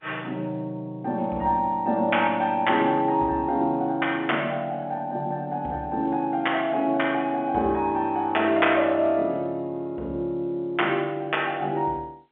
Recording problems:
phone line; 190 Hz to 3.4 kHz, G.711

